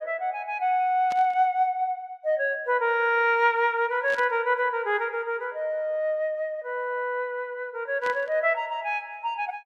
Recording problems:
static burst; at 1 s, at 4 s and at 8 s; peak -9 dB vs average level

